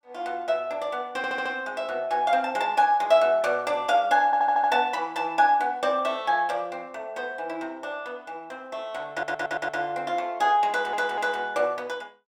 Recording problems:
audio stuttering; 4 times, first at 1 s

